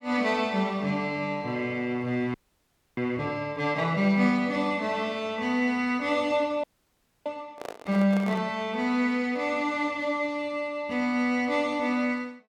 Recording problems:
frozen audio; at 2.5 s for 0.5 s and at 6.5 s for 0.5 s
handling noise; at 7.5 s; peak -7 dB vs average level

